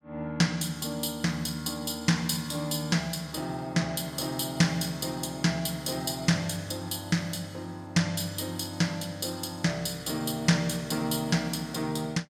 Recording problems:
none

